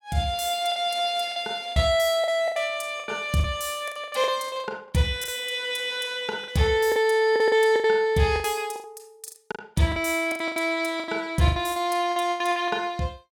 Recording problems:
lost packets; 14% of the sound replaced, filled with the last packet

